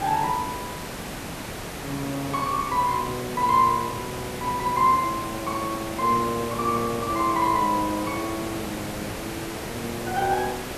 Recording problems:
background hiss; slope -5 dB per octave, SNR 8 dB

